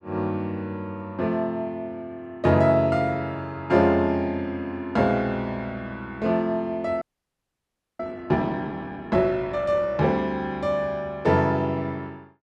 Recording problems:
frozen audio; at 7 s for 1 s

